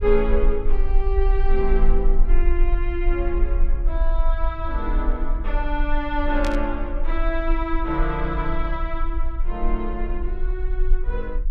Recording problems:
rumble; below 38 Hz, strongest tone 22 Hz, SNR -2 dB
static burst; at 6.5 s; peak -2 dB vs average level

